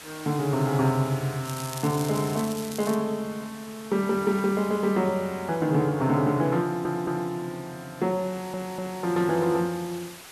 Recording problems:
background hiss; slope -1 dB per octave, SNR 17 dB
crackling; from 1.5 to 3 s; loose cable, SNR 13 dB
audio stuttering; at 6.5 s and at 8.5 s

